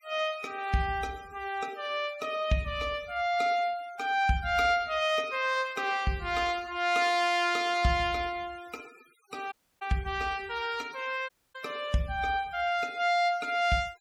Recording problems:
noise reduction artefacts; signal-to-artefact ratio 24 dB
dropout; at 9.5 s and at 11 s

